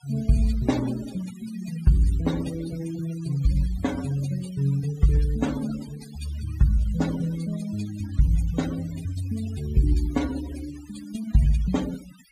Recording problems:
noise reduction artefacts; signal-to-artefact ratio 17 dB

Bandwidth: 15 kHz